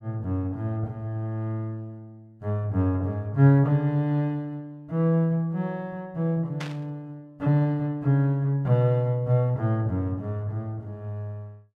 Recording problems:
static burst; at 6.5 s; peak -6 dB vs average level

